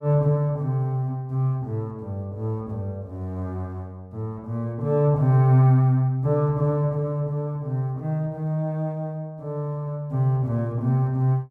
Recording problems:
none

